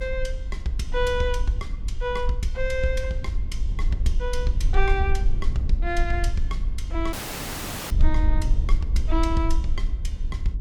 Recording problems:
rumble; below 50 Hz, strongest tone 20 Hz, SNR -2 dB
audio cutting out; at 7 s for 1 s

